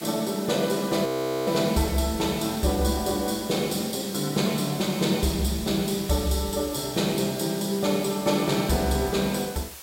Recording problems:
hiss; slope 0 dB per octave, SNR 14 dB
frozen audio; at 1 s

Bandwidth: 16 kHz